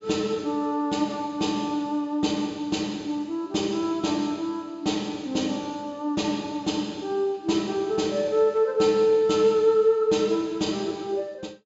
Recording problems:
treble cut off; nothing above 8 kHz

